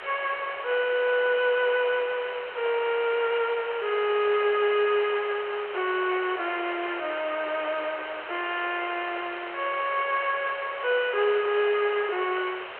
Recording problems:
telephone audio; 370 Hz to 3.3 kHz, G.711
distortion; soft clipping, signal-to-distortion ratio 4 dB
background hiss; SNR 3 dB

